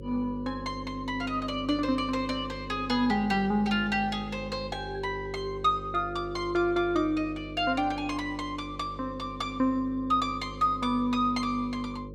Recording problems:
hum; 50 Hz, harmonics up to 550 Hz, SNR 13 dB

